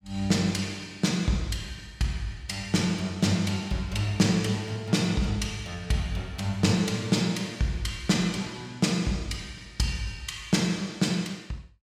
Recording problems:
none

